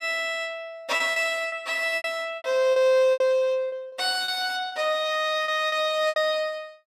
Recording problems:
lost packets; 11% of the sound replaced, filled with repeated pitch periods

